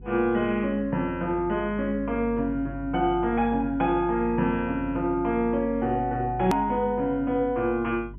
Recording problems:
treble missing; nothing above 3.3 kHz
electrical hum; 50 Hz, harmonics up to 400 Hz, SNR 15 dB
edit click; at 6.5 s

